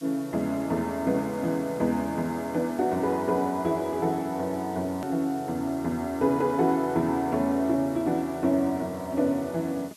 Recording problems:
hiss; slope +4 dB per octave, SNR 23 dB
edit click; at 5 s

